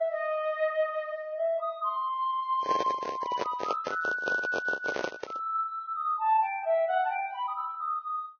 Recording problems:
codec artefacts; Vorbis, log-spectral distance 2 dB
handling noise; from 2.5 to 5.5 s; peak +2 dB vs average level

